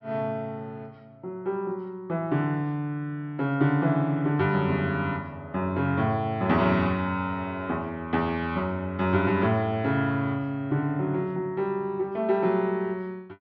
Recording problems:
low-pass filter; nothing above 5.8 kHz

